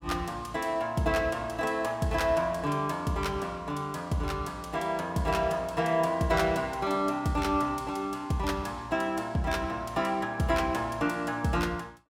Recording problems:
none

